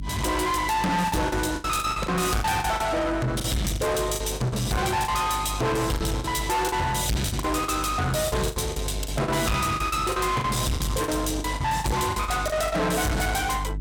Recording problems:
distortion; soft clipping, signal-to-distortion ratio 6 dB
hum; 50 Hz, harmonics up to 300 Hz, SNR 9 dB
lost packets; 12% of the sound replaced, filled with the last packet

